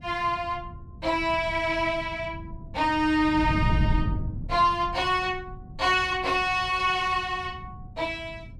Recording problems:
wind on the microphone; below 150 Hz, SNR 9 dB

